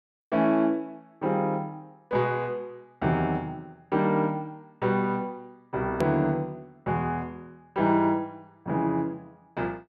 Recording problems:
hard cut with a click; at 6 s

